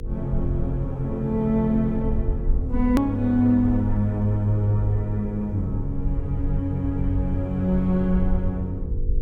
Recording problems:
electrical hum; 50 Hz, harmonics up to 500 Hz, SNR 13 dB
low-frequency rumble; below 58 Hz, SNR 8 dB
hard cut with a click; at 3 s

